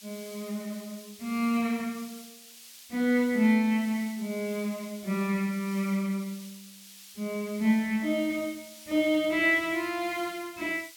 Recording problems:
background hiss; slope +5 dB per octave, SNR 18 dB

